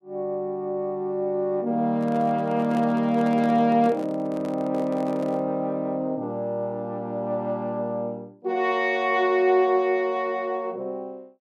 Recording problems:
microphone handling noise; from 2 to 5.5 s; peak -8 dB vs average level

